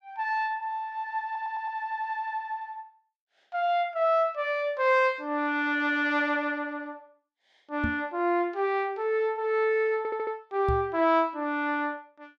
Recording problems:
audio stuttering; at 1.5 s and at 10 s
microphone thump; at 8 s and at 11 s; peak +1 dB vs average level

